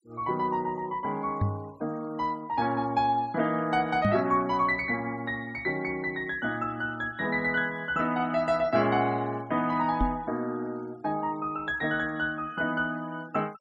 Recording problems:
denoising artefacts; signal-to-artefact ratio 25 dB
microphone bump; at 1.5 s, at 4 s and at 10 s; peak +5 dB vs average level

